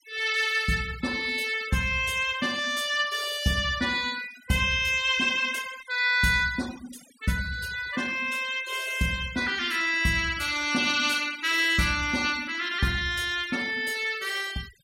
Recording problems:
noise reduction artefacts; signal-to-artefact ratio 17 dB

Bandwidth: 16 kHz